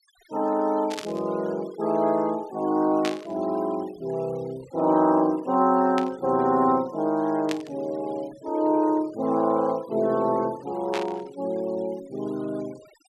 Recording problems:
denoising artefacts; signal-to-artefact ratio 24 dB
static burst; 5 times, first at 1 s; peak -2 dB vs average level

